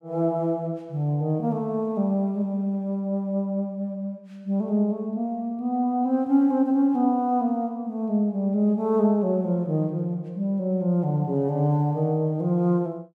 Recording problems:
none

